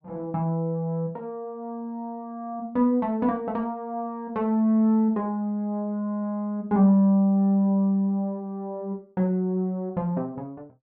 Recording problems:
none

